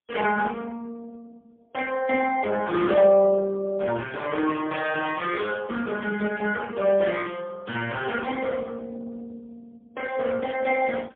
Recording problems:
telephone audio; 220 Hz to 2.8 kHz, AMR-NB, then MP3

